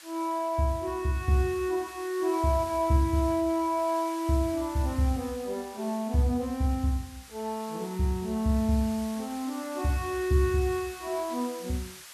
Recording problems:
background hiss; SNR 17 dB

